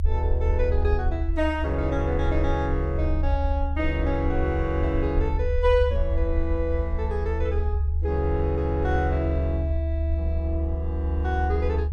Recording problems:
rumble; below 76 Hz, strongest tone 74 Hz, SNR -1 dB

